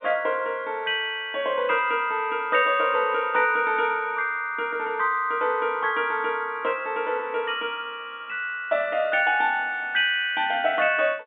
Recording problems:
phone line; 170 Hz to 3.8 kHz, G.711

